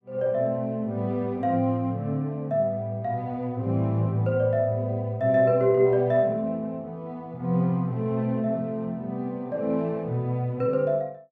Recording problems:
none

